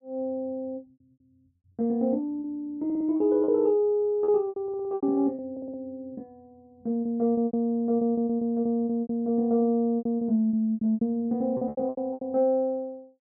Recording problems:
lost packets; 14% of the sound replaced, filled with repeated pitch periods
audio stuttering; at 3 s, at 4.5 s and at 5.5 s

